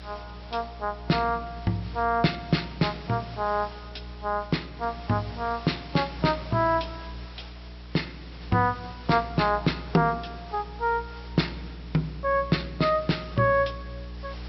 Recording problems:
treble cut off; nothing above 5.6 kHz
electrical hum; 60 Hz, harmonics up to 480 Hz, SNR 15 dB
hiss; slope -1 dB per octave, SNR 20 dB

